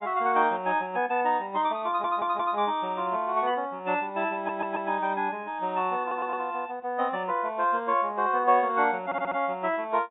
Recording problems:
treble missing; nothing above 4 kHz
stutter; 4 times, first at 2 s

